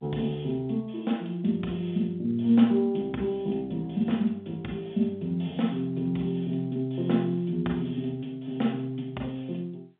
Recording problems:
telephone audio; 130 Hz to 3.6 kHz, G.711

